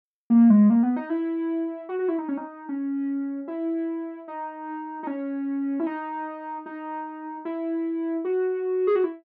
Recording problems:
none

